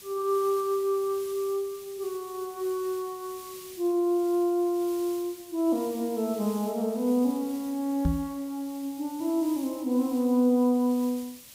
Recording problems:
background hiss; SNR 18 dB
knock on the microphone; at 8 s; peak +4 dB vs average level

